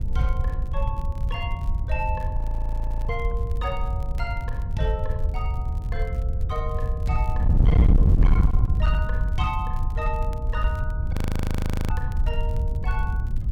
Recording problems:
distortion; hard clipping, signal-to-distortion ratio 12 dB
wind noise; below 84 Hz, SNR -7 dB
crackling; vinyl, SNR 23 dB
frozen audio; at 2.5 s for 0.5 s and at 11 s for 1 s

